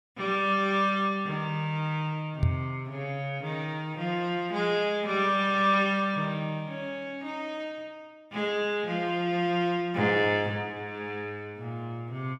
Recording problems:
microphone thump; at 2.5 s; peak +7 dB vs average level

